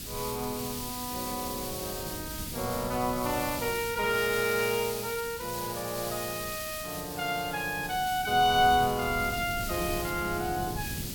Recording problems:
background hiss; slope +4 dB per octave, SNR 7 dB
wind noise; below 230 Hz, SNR 14 dB

